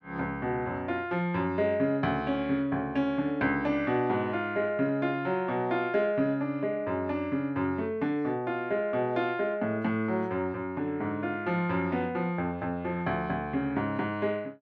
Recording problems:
none

